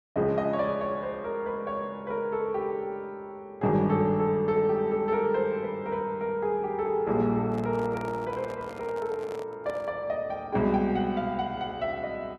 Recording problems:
handling noise; from 7.5 to 10 s; peak -9 dB vs average level

